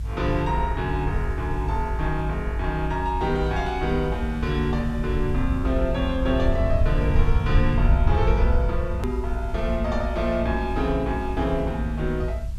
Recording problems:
hiss; slope -2 dB per octave, SNR 27 dB
low-frequency rumble; below 74 Hz, SNR 1 dB
hard cut with a click; at 9 s

